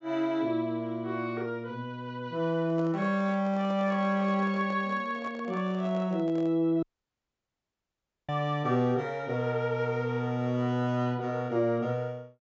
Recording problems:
low-pass filter; nothing above 8 kHz
microphone handling noise; from 2.5 to 6.5 s; peak -11 dB vs average level
audio cutting out; at 7 s for 1.5 s

